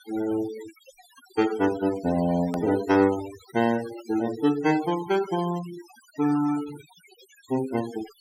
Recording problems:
denoising artefacts; signal-to-artefact ratio 16 dB
edit click; at 2.5 s

